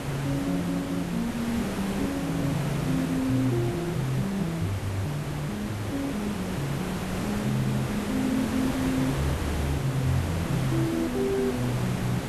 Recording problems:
background hiss; slope -6 dB per octave, SNR 4 dB

